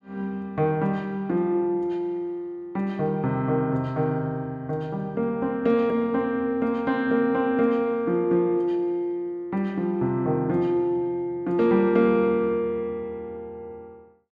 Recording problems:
none

